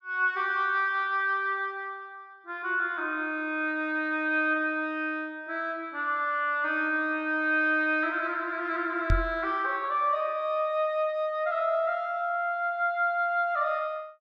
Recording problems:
microphone bump; at 9 s; peak +4 dB vs average level

